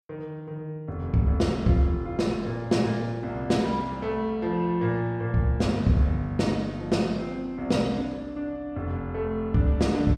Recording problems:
none

